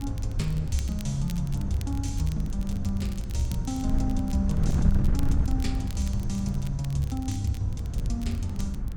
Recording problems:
wind noise; below 100 Hz, SNR 2 dB
crackle; vinyl, SNR 19 dB

